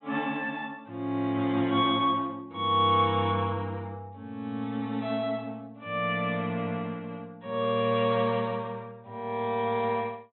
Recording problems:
treble missing; nothing above 4 kHz

